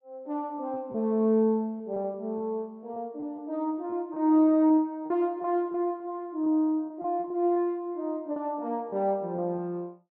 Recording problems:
packet loss; 7% of the sound replaced, filled with repeated pitch periods

